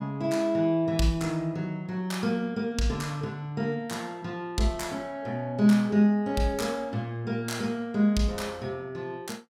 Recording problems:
none

